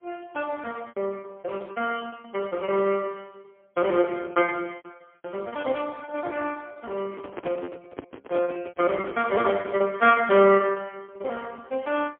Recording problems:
phone line; 260 Hz to 3.1 kHz, AMR-NB, then MP3
lost packets; 14% of the sound replaced, filled with repeated pitch periods
handling noise; from 7 to 9.5 s; peak -3 dB vs average level

